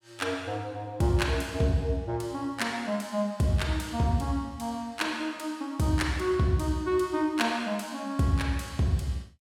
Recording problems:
none

